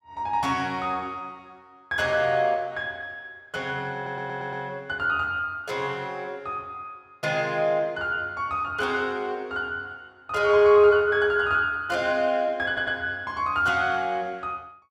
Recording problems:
audio stuttering; at 4 s and at 13 s

